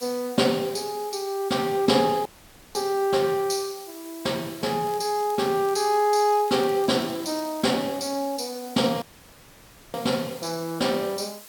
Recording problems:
hiss; slope 0 dB per octave, SNR 18 dB
audio cutting out; at 2.5 s for 0.5 s and at 9 s for 1 s
crackle; from 5 to 7.5 s; loose cable, SNR 23 dB

